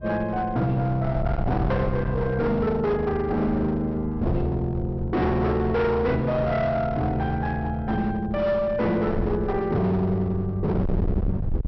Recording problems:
treble cut off; nothing above 5.8 kHz
distorted audio; hard clipping, uneven, signal-to-distortion ratio 7 dB
wind on the microphone; below 130 Hz, SNR 9 dB

